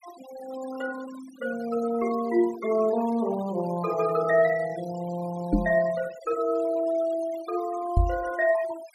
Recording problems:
denoising artefacts; signal-to-artefact ratio 18 dB
microphone thump; at 5.5 s and at 8 s; peak +8 dB vs average level

